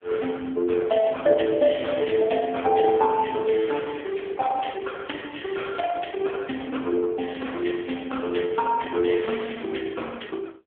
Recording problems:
telephone audio; 280 Hz to 3.2 kHz, AMR-NB

